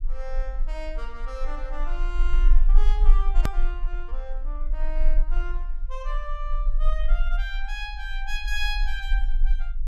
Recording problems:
low-frequency rumble; below 36 Hz, strongest tone 20 Hz, SNR -8 dB
hard cut with a click; at 3.5 s

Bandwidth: 14 kHz